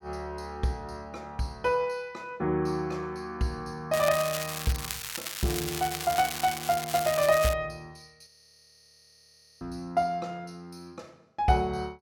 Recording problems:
crackling; from 4 to 7.5 s; loose cable, SNR 5 dB
audio freezing; at 8.5 s for 1.5 s

